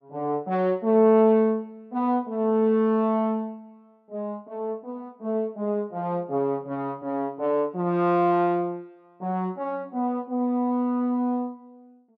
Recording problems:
none

